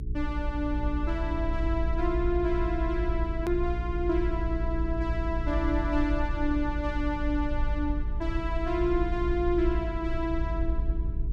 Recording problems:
hum; 60 Hz, harmonics up to 420 Hz, SNR 6 dB
rumble; below 52 Hz, SNR 3 dB
click at an edit; at 3.5 s

